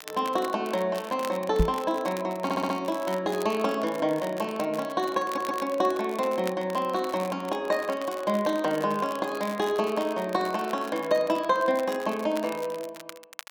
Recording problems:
crackle; vinyl, SNR 17 dB
microphone bump; at 1.5 s; peak +7 dB vs average level
stutter; at 2.5 s and at 5.5 s

